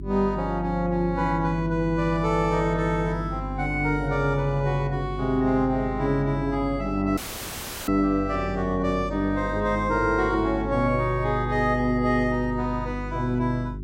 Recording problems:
hum; 50 Hz, harmonics up to 400 Hz, SNR 9 dB
audio cutting out; at 7 s for 0.5 s; filled with static

